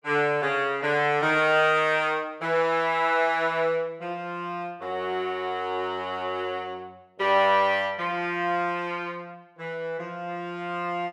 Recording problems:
none

